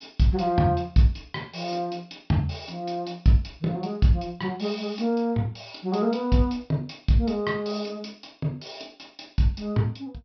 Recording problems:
treble missing; nothing above 5.5 kHz

